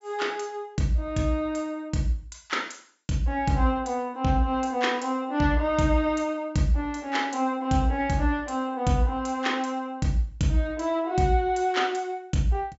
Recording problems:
treble missing; nothing above 8 kHz

